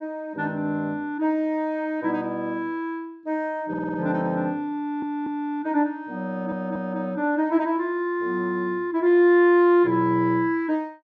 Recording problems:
audio stuttering; at 3.5 s, at 5 s and at 6.5 s

